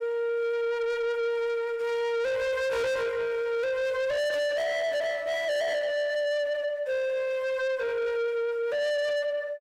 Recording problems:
distortion; soft clipping, signal-to-distortion ratio 8 dB

